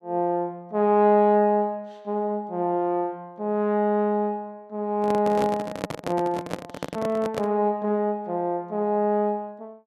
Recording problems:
microphone handling noise; from 5 to 7.5 s; peak -1 dB vs average level

